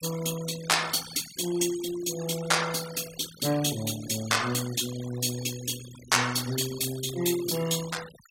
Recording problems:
denoising artefacts; signal-to-artefact ratio 13 dB

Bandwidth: 16 kHz